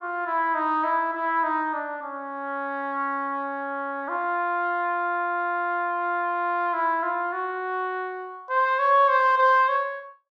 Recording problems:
none

